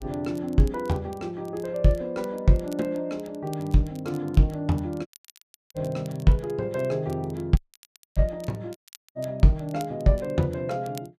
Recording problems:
crackling; vinyl, SNR 26 dB
audio cutting out; at 5 s for 0.5 s, at 7.5 s for 0.5 s and at 9 s

